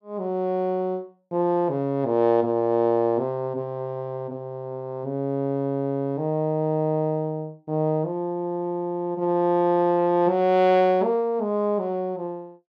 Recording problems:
none

